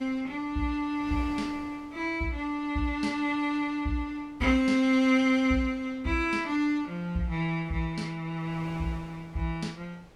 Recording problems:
wind on the microphone; below 1.1 kHz, SNR 24 dB

